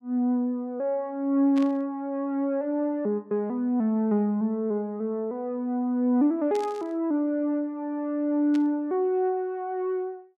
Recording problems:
burst of static; at 1.5 s, at 6.5 s and at 8.5 s; peak -11 dB vs average level

